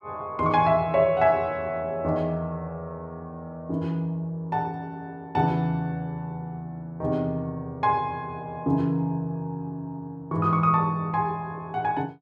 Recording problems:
none

